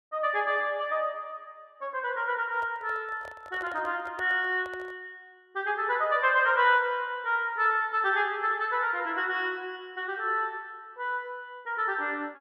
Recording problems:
handling noise; from 2.5 to 5 s; peak -10 dB vs average level

